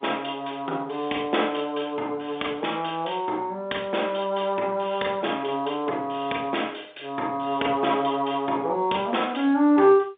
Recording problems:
telephone audio; 240 Hz to 3.7 kHz, G.711

